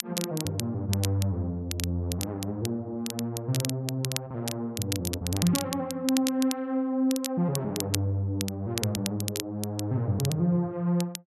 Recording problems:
crackling; vinyl, SNR 6 dB

